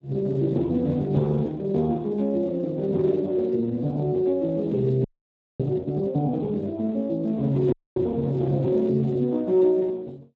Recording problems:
lossy codec; Speex, log-spectral distance 2 dB
frozen audio; at 5 s for 0.5 s and at 7.5 s

